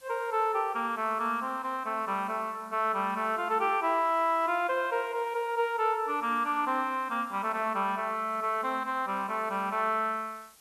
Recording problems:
background hiss; slope 0 dB per octave, SNR 27 dB

